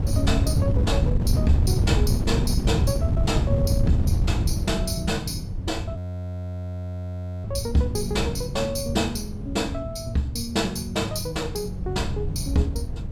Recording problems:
wind on the microphone; below 130 Hz, SNR -1 dB
frozen audio; at 6 s for 1.5 s

